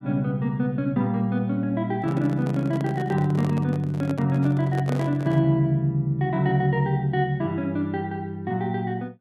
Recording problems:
handling noise; from 2 to 5.5 s; peak -5 dB vs average level

